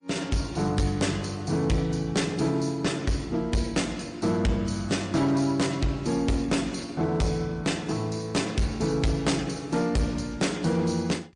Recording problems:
lossy codec; MP3, then MP3, log-spectral distance 3 dB, nothing above 8.7 kHz
distortion; hard clipping, signal-to-distortion ratio 10 dB

